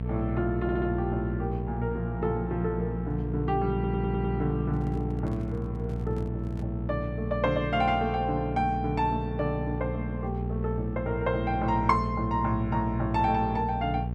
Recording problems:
hum; 60 Hz, harmonics up to 660 Hz, SNR 3 dB
audio stuttering; at 0.5 s and at 3.5 s
handling noise; from 4.5 to 6.5 s; peak -7 dB vs average level

